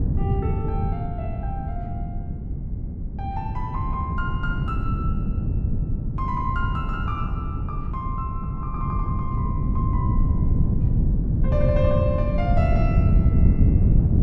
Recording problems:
wind on the microphone; below 150 Hz, SNR -7 dB

